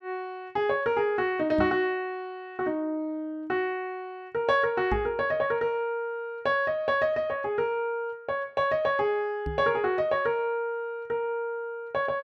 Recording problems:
microphone thump; at 1.5 s, at 5 s and at 9.5 s; peak -1 dB vs average level

